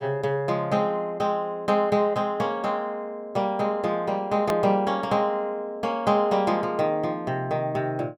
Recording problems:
hard cut with a click; at 4.5 s

